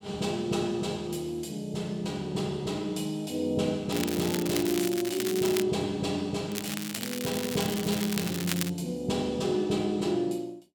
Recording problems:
crackle; from 4 to 5.5 s and from 6.5 to 8.5 s; loose cable, SNR 5 dB

